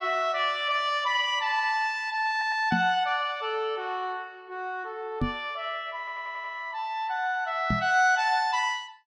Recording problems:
stutter; at 2.5 s and at 6 s
microphone bump; at 2.5 s, at 5 s and at 7.5 s; peak +3 dB vs average level

